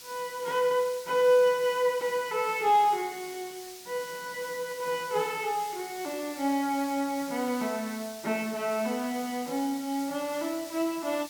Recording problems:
background hiss; slope +2 dB per octave, SNR 14 dB

